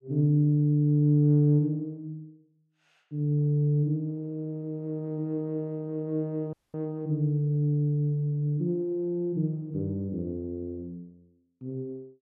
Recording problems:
audio cutting out; at 6.5 s

